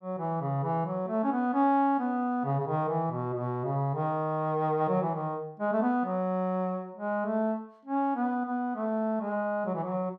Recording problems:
none

